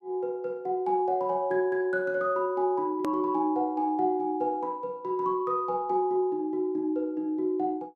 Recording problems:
click at an edit; at 3 s

